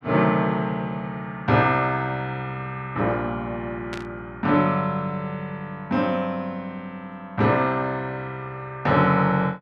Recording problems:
static burst; at 4 s; peak -7 dB vs average level

